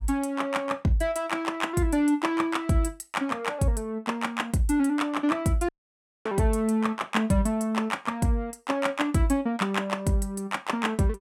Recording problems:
dropout; at 5.5 s for 0.5 s

